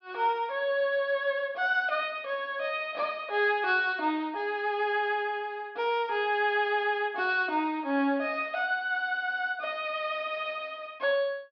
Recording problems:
treble cut off; nothing above 5.5 kHz

